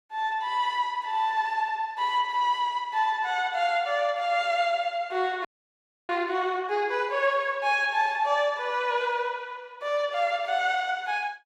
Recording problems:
audio freezing; at 5.5 s for 0.5 s

